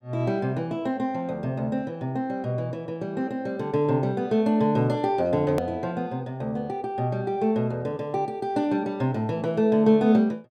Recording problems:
hard cut with a click; at 5.5 s

